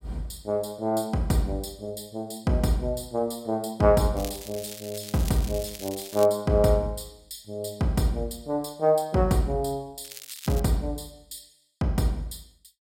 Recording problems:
crackling; from 4 to 6.5 s and at 10 s; loose cable, SNR 13 dB

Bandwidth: 16 kHz